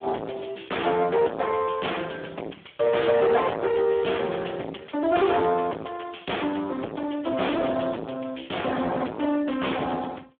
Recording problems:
telephone audio; 260 Hz to 3.4 kHz, Speex
distortion; soft clipping, signal-to-distortion ratio 3 dB

